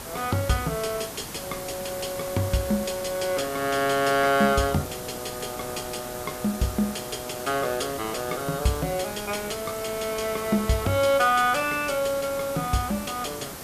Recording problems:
hiss; slope -4 dB per octave, SNR 10 dB

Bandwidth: 14.5 kHz